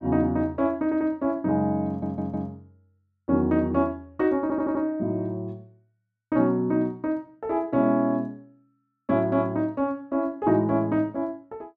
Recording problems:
stutter; at 1 s, at 2 s and at 4.5 s

